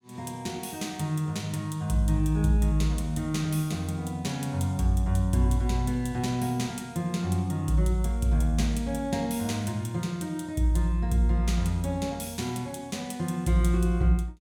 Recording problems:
none

